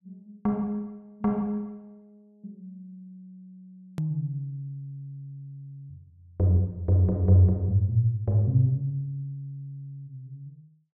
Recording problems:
click at an edit; at 4 s

